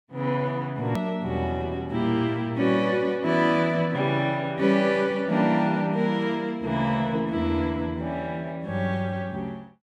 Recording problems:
edit click; at 1 s

